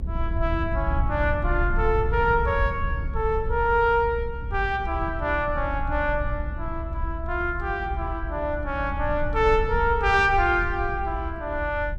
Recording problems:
rumble; below 74 Hz, SNR 6 dB

